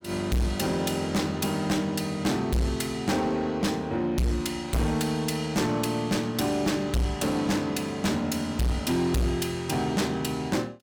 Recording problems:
distortion; hard clipping, uneven, signal-to-distortion ratio 6 dB

